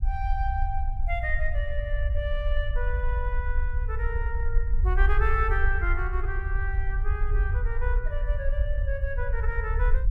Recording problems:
low-frequency rumble; below 58 Hz, SNR -4 dB

